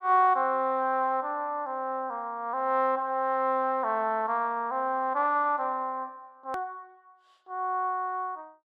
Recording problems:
hard cut with a click; at 6.5 s

